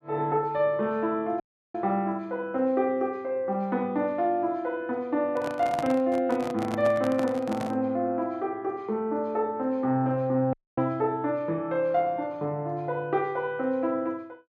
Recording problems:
dropout; at 1.5 s and at 11 s
microphone handling noise; from 5.5 to 8 s; peak -2 dB vs average level

